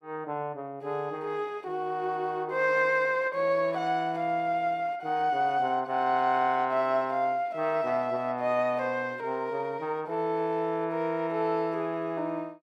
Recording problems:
none

